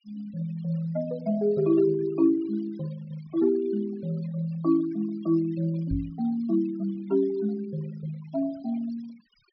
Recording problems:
treble missing; nothing above 5.5 kHz
denoising artefacts; signal-to-artefact ratio 22 dB
microphone bump; at 6 s; peak 0 dB vs average level

